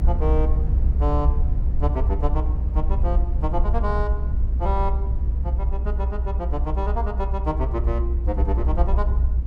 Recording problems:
rumble; below 64 Hz, SNR -6 dB

